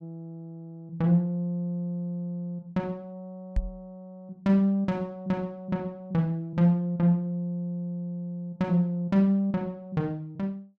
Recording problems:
microphone thump; at 3.5 s; peak +2 dB vs average level

